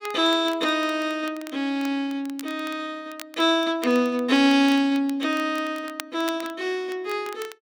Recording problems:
crackling; vinyl, SNR 20 dB

